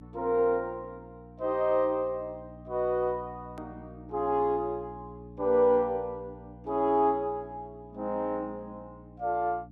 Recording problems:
electrical hum; 60 Hz, harmonics up to 300 Hz, SNR 20 dB
click at an edit; at 3.5 s

